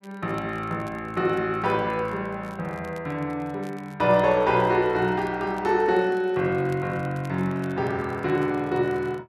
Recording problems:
crackling; vinyl, SNR 30 dB

